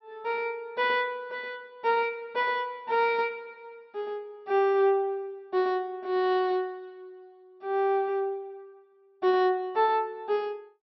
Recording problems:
treble cut off; nothing above 5.6 kHz

